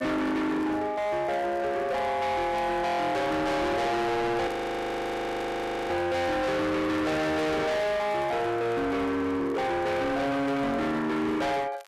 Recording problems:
distorted audio; hard clipping, signal-to-distortion ratio 6 dB
crackling; vinyl, SNR 29 dB
frozen audio; at 4.5 s for 1.5 s

